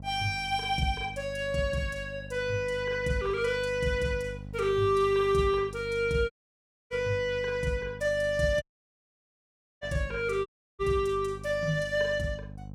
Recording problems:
hum; 50 Hz, harmonics up to 800 Hz, SNR 14 dB
dropout; at 6.5 s for 0.5 s, at 8.5 s for 1 s and at 10 s

